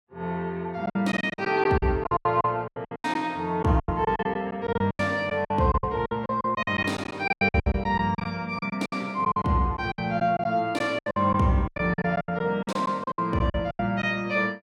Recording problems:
lost packets; 18% of the sound replaced, filled with silence

